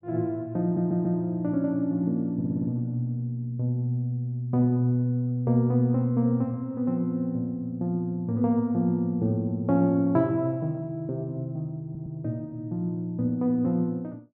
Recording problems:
audio stuttering; at 0.5 s, at 2.5 s and at 12 s

